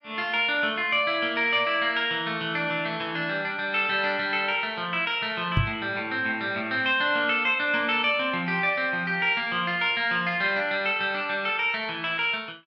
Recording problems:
knock on the microphone; at 5.5 s; peak +4 dB vs average level

